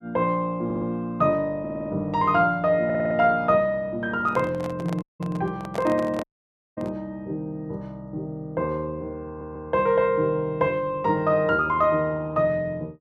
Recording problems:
audio stuttering; 4 times, first at 0.5 s
microphone handling noise; from 4 to 7 s; peak -5 dB vs average level
audio cutting out; at 5 s and at 6 s for 0.5 s

